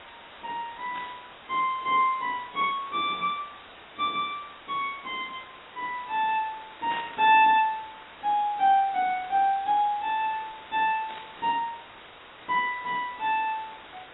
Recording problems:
lossy compression; AAC, log-spectral distance 17 dB, nothing above 3.6 kHz
background hiss; SNR 19 dB
burst of static; at 1 s, at 7 s and at 11 s; peak -9 dB vs average level

